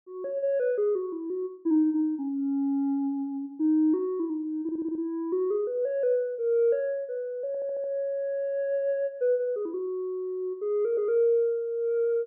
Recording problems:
audio stuttering; at 4.5 s and at 7.5 s

